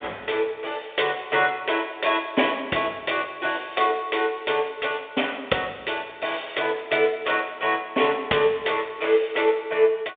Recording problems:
telephone audio; 240 Hz to 3.6 kHz, G.726

